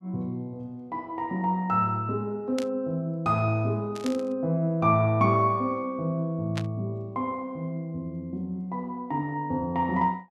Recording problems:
burst of static; at 2.5 s, at 4 s and at 6.5 s; peak -3 dB vs average level

